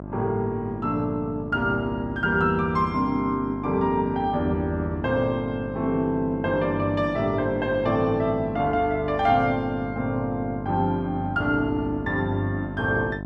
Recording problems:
electrical hum; 50 Hz, harmonics up to 1.1 kHz, SNR 10 dB

